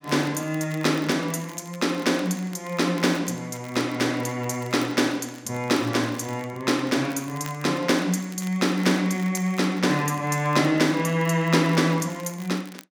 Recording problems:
crackle; vinyl, SNR 22 dB

